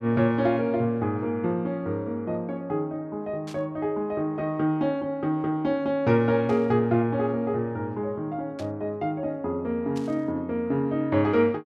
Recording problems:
burst of static; 4 times, first at 3.5 s; peak -13 dB vs average level

